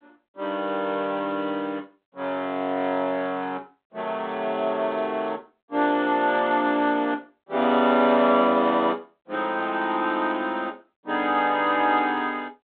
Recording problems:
phone line; 190 Hz to 3.9 kHz, G.726

